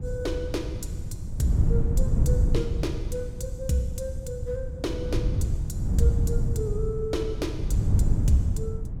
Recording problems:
wind noise; below 110 Hz, SNR -3 dB

